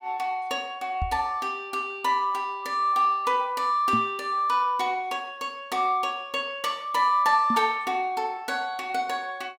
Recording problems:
microphone bump; at 1 s, at 4 s and at 7.5 s; peak 0 dB vs average level

